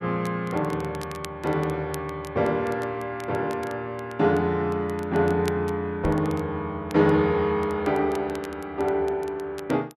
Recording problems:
crackling; vinyl, SNR 22 dB
microphone bump; at 6 s; peak 0 dB vs average level

